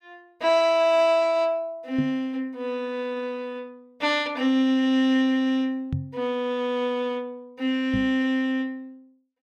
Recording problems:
knock on the microphone; at 2 s, at 6 s and at 8 s; peak 0 dB vs average level

